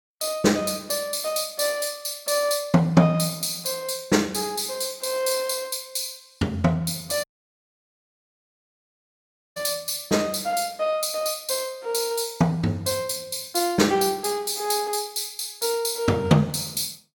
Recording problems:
audio cutting out; at 7 s for 2.5 s

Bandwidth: 18 kHz